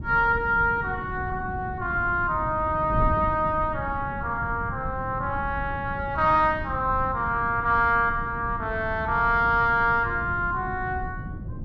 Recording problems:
wind noise; below 180 Hz, SNR 11 dB

